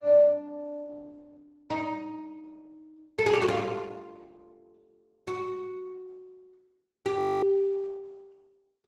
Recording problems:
codec artefacts; Opus, log-spectral distance 2 dB
frozen audio; at 7 s

